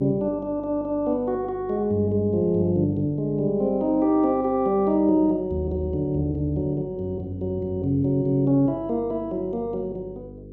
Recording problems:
electrical hum; 50 Hz, harmonics up to 500 Hz, SNR 19 dB

